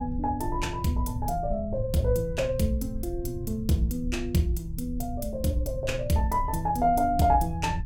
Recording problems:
rumble; below 94 Hz, SNR 9 dB

